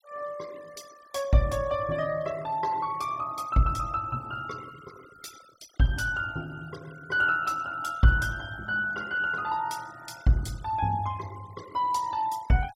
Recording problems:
denoising artefacts; signal-to-artefact ratio 21 dB

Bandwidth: 16.5 kHz